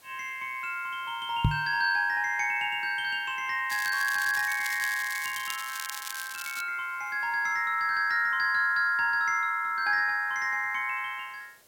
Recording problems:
background hiss; slope -2 dB per octave, SNR 29 dB
microphone thump; at 1.5 s; peak +6 dB vs average level
crackle; from 3.5 to 6.5 s; loose cable, SNR 10 dB

